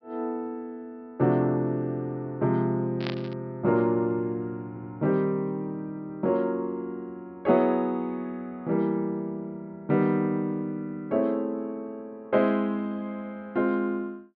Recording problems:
treble missing; nothing above 5.5 kHz
burst of static; at 3 s; peak -3 dB vs average level
audio stuttering; at 4.5 s

